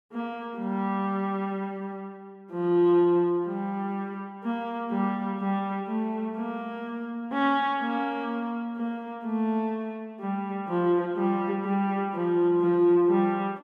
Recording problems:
none

